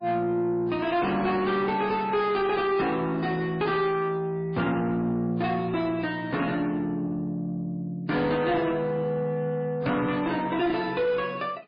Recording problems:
lossy codec; MP3, log-spectral distance 2 dB, nothing above 4.5 kHz
distortion; soft clipping, signal-to-distortion ratio 11 dB

